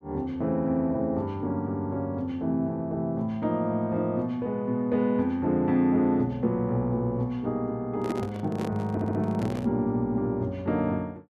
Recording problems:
handling noise; from 8 to 9.5 s; peak 0 dB vs average level
audio stuttering; at 9 s

